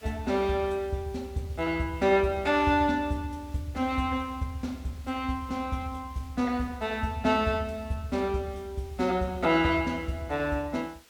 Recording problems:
hiss; slope 0 dB per octave, SNR 26 dB

